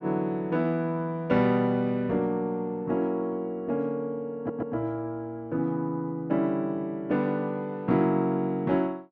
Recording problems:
audio stuttering; at 4.5 s

